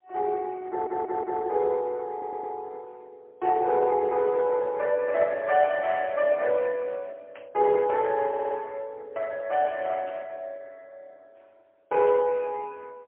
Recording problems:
phone line; 150 Hz to 3.4 kHz, AMR-NB, then MP3
audio stuttering; at 0.5 s, at 2 s and at 8.5 s
burst of static; 4 times, first at 6 s; peak -14 dB vs average level

